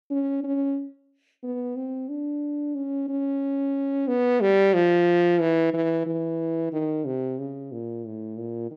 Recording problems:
none

